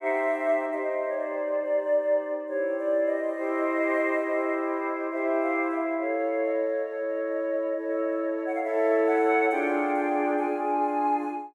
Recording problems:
none

